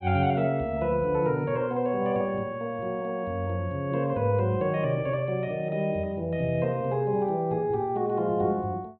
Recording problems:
treble missing; nothing above 4.5 kHz

